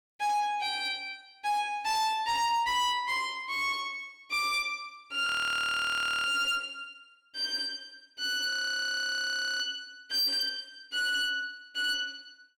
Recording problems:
distorted audio; hard clipping, signal-to-distortion ratio 12 dB
audio freezing; at 5.5 s for 1 s and at 8.5 s for 1 s

